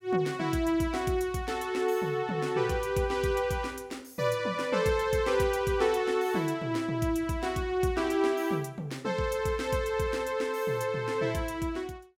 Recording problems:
none

